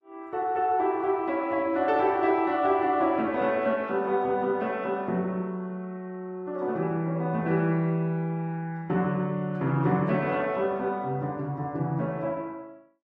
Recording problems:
lossy compression; Vorbis, log-spectral distance 2 dB

